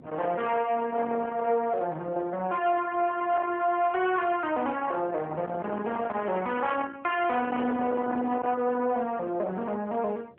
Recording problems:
phone line; 260 Hz to 3.5 kHz, AMR-NB
distorted audio; soft clipping, signal-to-distortion ratio 13 dB
wind noise; below 1 kHz, SNR 15 dB

